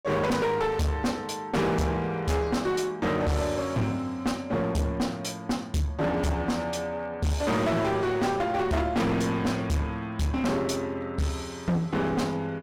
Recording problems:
distortion; hard clipping, uneven, signal-to-distortion ratio 5 dB

